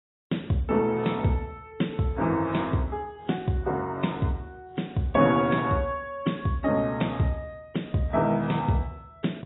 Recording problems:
lossy compression; AAC, log-spectral distance 3 dB, nothing above 3.8 kHz

